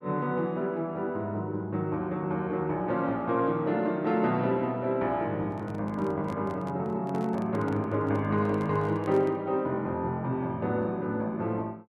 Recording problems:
handling noise; from 5.5 to 9.5 s; peak -10 dB vs average level

